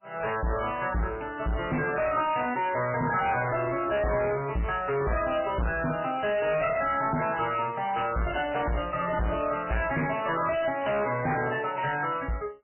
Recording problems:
lossy compression; MP3, log-spectral distance 6 dB, nothing above 3 kHz
distorted audio; hard clipping, signal-to-distortion ratio 6 dB

